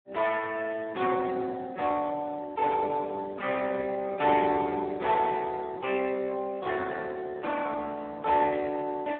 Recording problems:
telephone audio; 260 Hz to 2.6 kHz, Speex

